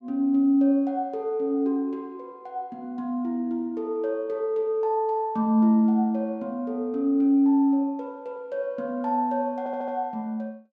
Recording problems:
stutter; at 9.5 s

